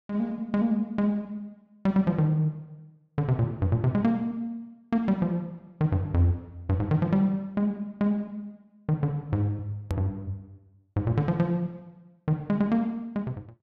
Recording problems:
edit click; at 10 s

